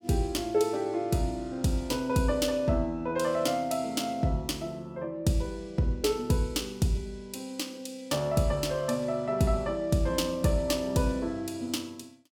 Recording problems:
none

